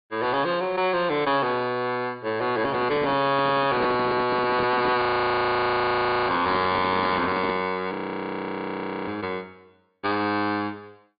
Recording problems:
treble cut off; nothing above 4.8 kHz
distortion; hard clipping, uneven, signal-to-distortion ratio 11 dB
handling noise; from 2.5 to 7.5 s; peak 0 dB vs average level
frozen audio; at 5 s for 1.5 s and at 8 s for 1 s

